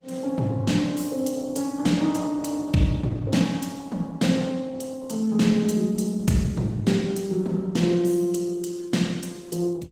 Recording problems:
lossy compression; Opus, log-spectral distance 4 dB

